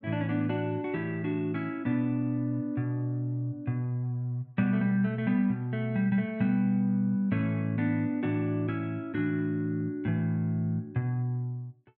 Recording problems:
none

